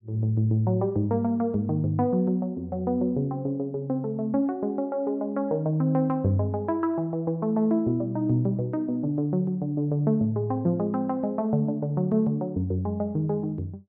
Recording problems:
none

